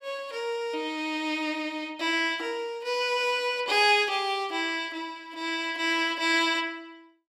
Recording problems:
none

